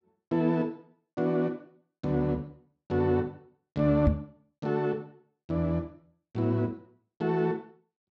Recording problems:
knock on the microphone; at 4 s; peak +7 dB vs average level

